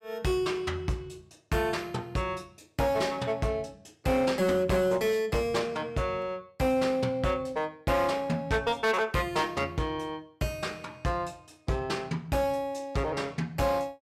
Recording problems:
distorted audio; hard clipping, uneven, signal-to-distortion ratio 11 dB

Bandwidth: 16 kHz